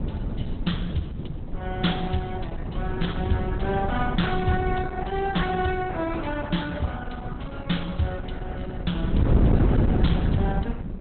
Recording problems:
codec artefacts; Opus, log-spectral distance 4 dB, nothing above 4 kHz
distorted audio; hard clipping, signal-to-distortion ratio 10 dB
wind noise; below 210 Hz, SNR 0 dB

